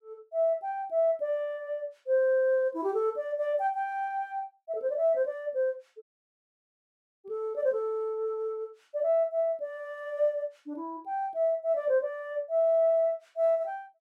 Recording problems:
audio cutting out; at 6 s for 1 s

